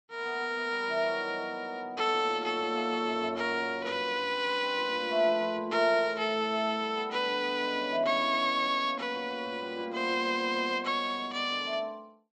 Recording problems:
none

